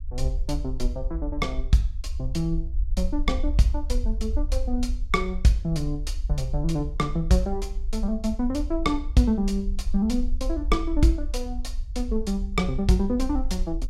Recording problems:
low-frequency rumble; below 54 Hz, SNR 5 dB

